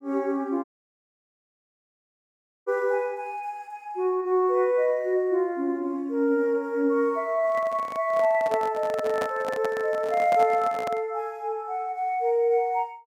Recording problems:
dropout; at 0.5 s for 2 s
handling noise; from 7.5 to 11 s; peak -2 dB vs average level

